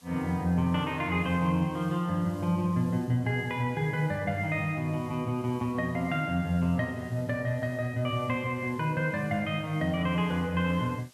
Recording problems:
hiss; slope +1 dB per octave, SNR 27 dB

